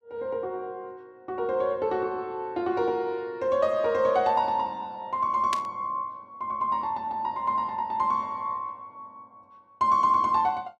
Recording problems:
burst of static; at 5.5 s; peak -1 dB vs average level

